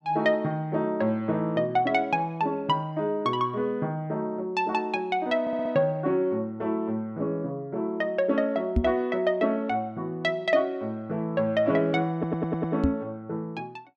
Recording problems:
stutter; at 5.5 s and at 12 s
knock on the microphone; at 9 s and at 13 s; peak +6 dB vs average level

